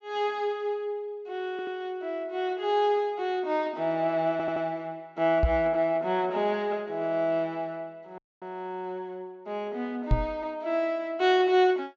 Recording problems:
treble cut off; nothing above 8 kHz
stutter; at 1.5 s and at 4.5 s
microphone bump; at 5.5 s and at 10 s; peak +7 dB vs average level
dropout; at 8 s

